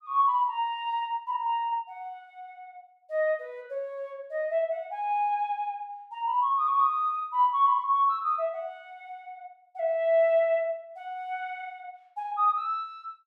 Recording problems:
none

